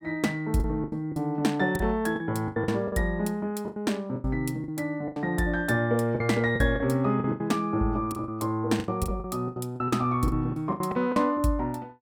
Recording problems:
lost packets; 13% of the sound replaced, filled with the last packet

